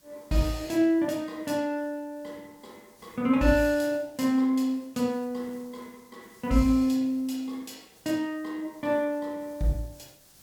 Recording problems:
hiss; SNR 29 dB

